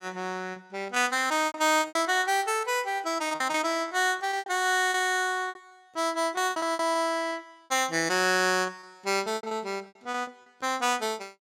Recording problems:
lost packets; 14% of the sound replaced, filled with repeated pitch periods

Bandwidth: 16.5 kHz